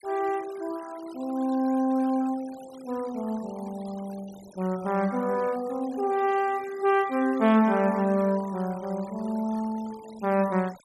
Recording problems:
denoising artefacts; signal-to-artefact ratio 22 dB

